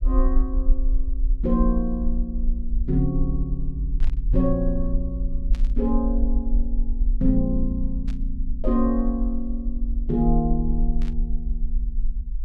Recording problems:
low-frequency rumble; below 44 Hz, SNR 0 dB
static burst; 4 times, first at 4 s; peak -13 dB vs average level

